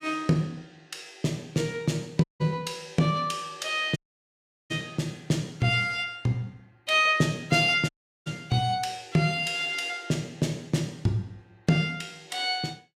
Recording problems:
dropout; at 2 s, at 4 s for 0.5 s and at 8 s

